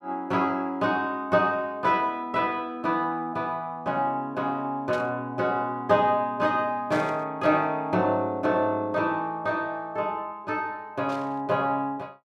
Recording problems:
static burst; at 5 s, at 7 s and at 11 s; peak -11 dB vs average level

